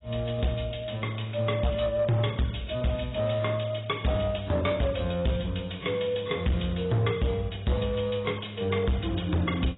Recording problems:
lossy codec; AAC, log-spectral distance 8 dB, nothing above 3.8 kHz
distortion; hard clipping, uneven, signal-to-distortion ratio 8 dB

